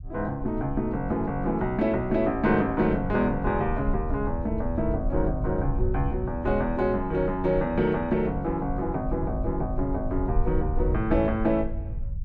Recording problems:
rumble; below 80 Hz, SNR 7 dB

